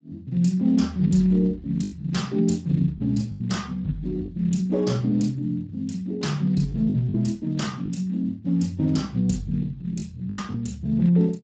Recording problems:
lossy compression; Speex, log-spectral distance 2 dB, nothing above 7.6 kHz
packet loss; 4% of the sound replaced, filled with the last packet

